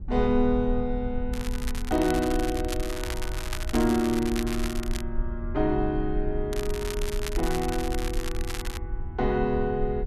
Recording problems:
rumble; below 54 Hz, SNR 7 dB
crackling; from 1.5 to 5 s and from 6.5 to 9 s; loose cable, SNR 10 dB

